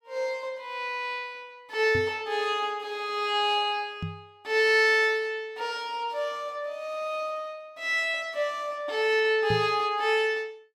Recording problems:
microphone thump; at 2 s, at 4 s and at 9.5 s; peak -1 dB vs average level

